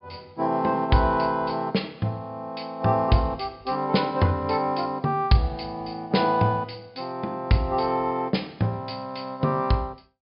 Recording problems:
treble cut off; nothing above 5.5 kHz

